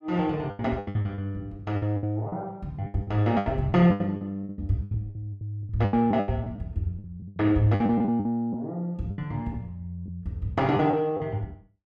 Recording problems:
packet loss; 16% of the sound replaced, filled with the last packet

